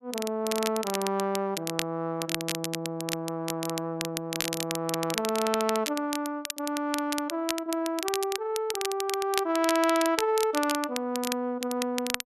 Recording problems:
crackle; vinyl, SNR 5 dB

